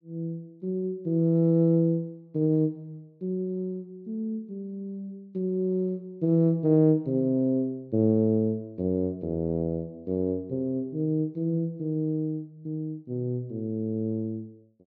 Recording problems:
none

